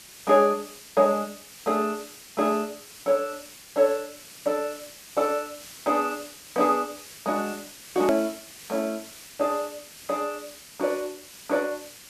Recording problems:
background hiss; SNR 16 dB
edit click; at 8 s

